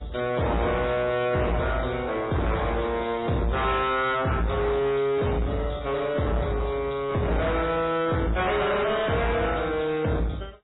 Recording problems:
codec artefacts; AAC, then MP3, log-spectral distance 5 dB, nothing above 3.8 kHz
distorted audio; soft clipping, signal-to-distortion ratio 7 dB

